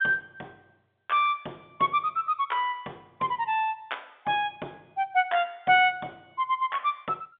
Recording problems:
telephone audio; 280 Hz to 3.6 kHz, G.711

